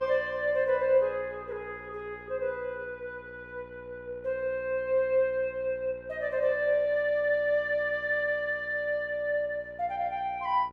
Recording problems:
electrical hum; 60 Hz, harmonics up to 2.5 kHz, SNR 23 dB

